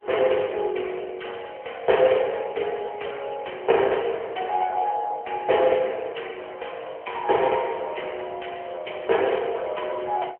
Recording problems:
telephone audio; 340 Hz to 3.1 kHz, AMR-NB

